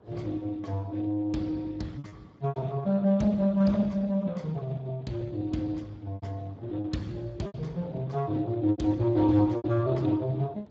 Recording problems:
lossy codec; Speex, log-spectral distance 3 dB, nothing above 7.3 kHz
wind on the microphone; below 520 Hz, SNR 24 dB
packet loss; 6% of the sound replaced, filled with repeated pitch periods

